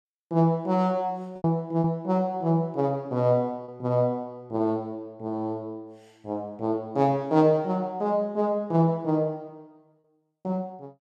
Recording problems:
packet loss; 1.7% of the sound replaced, filled with repeated pitch periods

